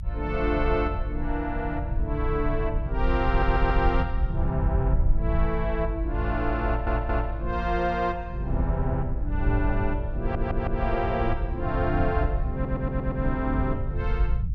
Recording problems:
low-frequency rumble; below 70 Hz, SNR 1 dB
audio stuttering; 4 times, first at 3.5 s

